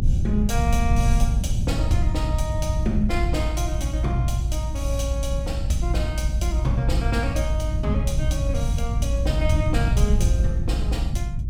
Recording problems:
rumble; below 96 Hz, SNR -4 dB

